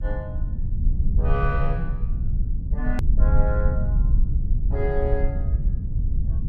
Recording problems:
rumble; below 70 Hz, SNR -6 dB
edit click; at 3 s

